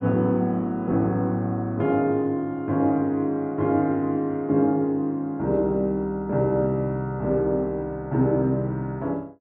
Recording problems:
none

